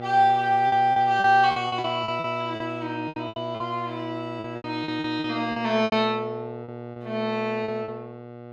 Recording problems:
mains hum; 60 Hz, harmonics up to 2 kHz, SNR 12 dB
packet loss; 13% of the sound replaced, filled with repeated pitch periods

